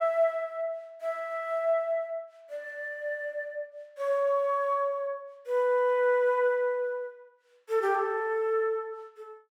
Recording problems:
none

